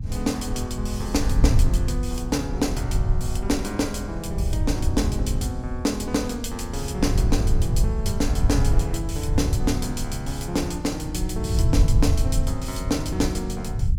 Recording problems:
hum; 50 Hz, harmonics up to 500 Hz, SNR 19 dB
rumble; below 94 Hz, SNR -1 dB

